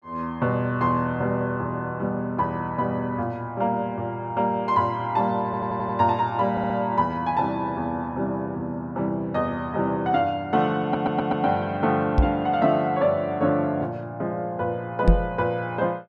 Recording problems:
stutter; at 5.5 s, at 6.5 s and at 11 s
knock on the microphone; at 12 s and at 15 s; peak +9 dB vs average level

